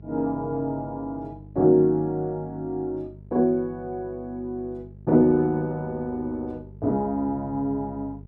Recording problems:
hum; 50 Hz, harmonics up to 450 Hz, SNR 19 dB

